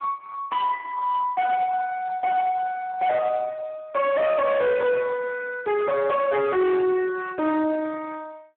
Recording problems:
telephone audio; 110 Hz to 3.8 kHz, Speex
distortion; hard clipping, signal-to-distortion ratio 8 dB

